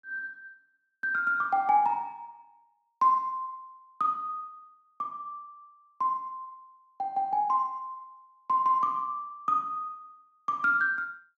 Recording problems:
none

